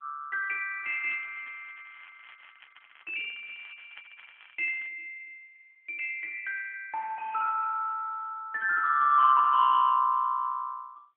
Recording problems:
telephone audio; 340 Hz to 3 kHz, AMR-NB
crackle; from 1 to 5 s; loose cable, SNR 26 dB

